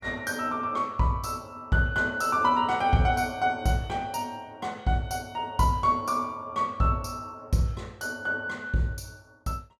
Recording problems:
none

